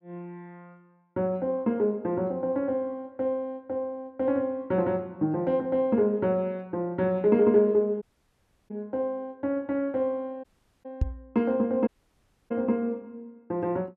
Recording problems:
dropout; at 8 s for 0.5 s, at 10 s and at 12 s for 0.5 s
knock on the microphone; at 11 s; peak +5 dB vs average level

